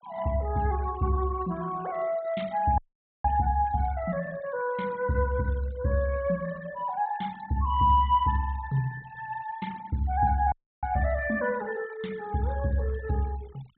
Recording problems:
low-pass filter; nothing above 4 kHz
noise reduction artefacts; signal-to-artefact ratio 22 dB
audio freezing; at 3 s and at 11 s

